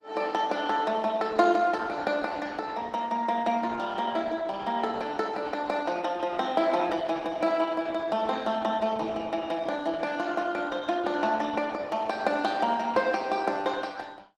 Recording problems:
codec artefacts; Opus, log-spectral distance 4 dB

